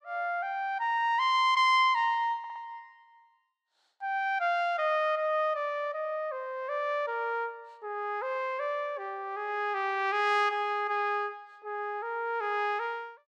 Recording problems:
audio stuttering; at 2.5 s

